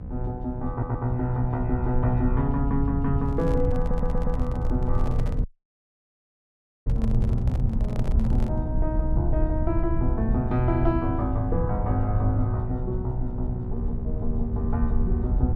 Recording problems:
electrical hum; 60 Hz, harmonics up to 1 kHz, SNR 10 dB
rumble; below 84 Hz, SNR 1 dB
stutter; at 0.5 s and at 4 s
microphone handling noise; from 3 to 8.5 s; peak -6 dB vs average level
dropout; at 5.5 s for 1.5 s

